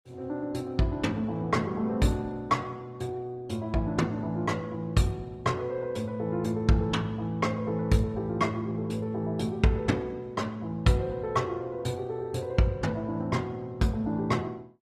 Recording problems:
lossy compression; Opus, log-spectral distance 2 dB, nothing above 14.7 kHz

